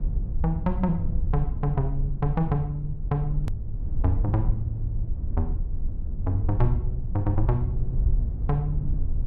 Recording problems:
rumble; below 70 Hz, SNR 1 dB
hard cut with a click; at 3.5 s

